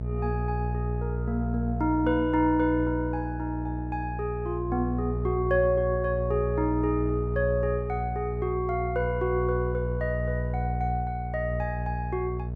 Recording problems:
hum; 60 Hz, harmonics up to 660 Hz, SNR 3 dB

